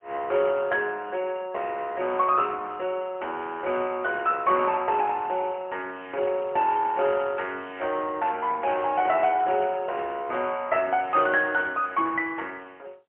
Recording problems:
phone line; 320 Hz to 3 kHz, AMR-NB, then MP3

